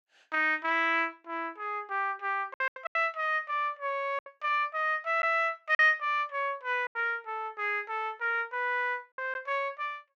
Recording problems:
packet loss; 5% of the sound replaced, filled with silence

